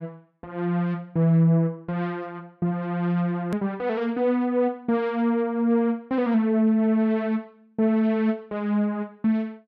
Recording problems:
hard cut with a click; at 3.5 s

